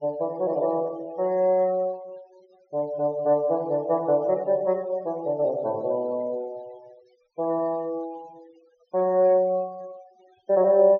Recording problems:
low-pass filter; nothing above 6.7 kHz
noise reduction artefacts; signal-to-artefact ratio 27 dB

